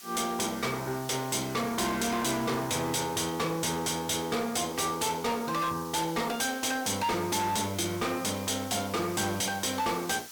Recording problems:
distortion; hard clipping, signal-to-distortion ratio 7 dB
hiss; slope +3 dB per octave, SNR 15 dB

